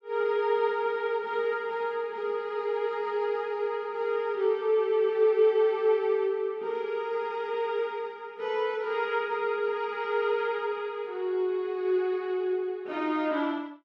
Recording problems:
none

